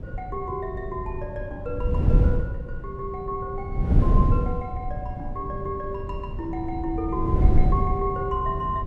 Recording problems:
wind on the microphone; below 120 Hz, SNR -4 dB

